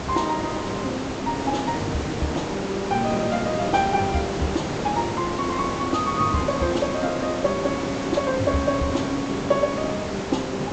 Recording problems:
treble cut off; nothing above 8 kHz
hiss; slope -6 dB per octave, SNR 4 dB
crackle; from 5.5 to 7 s; loose cable, SNR 27 dB

